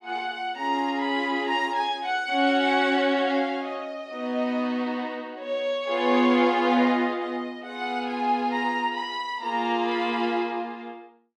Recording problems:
none

